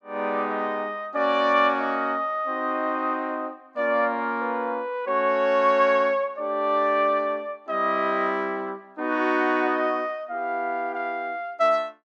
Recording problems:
none

